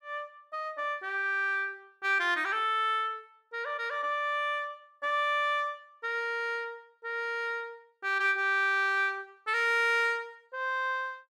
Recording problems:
none

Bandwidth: 14.5 kHz